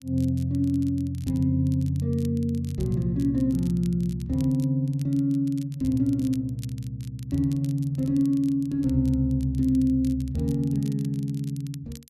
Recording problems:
crackling; vinyl, SNR 26 dB

